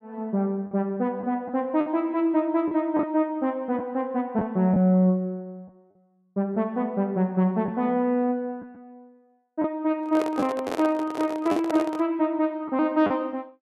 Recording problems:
lost packets; 3% of the sound replaced, filled with the last packet
handling noise; from 10 to 12 s; peak -2 dB vs average level

